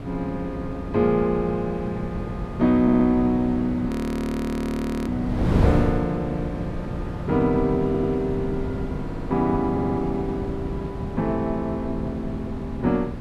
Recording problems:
wind noise; below 300 Hz, SNR 5 dB
stutter; 4 times, first at 3 s
frozen audio; at 4 s for 1 s

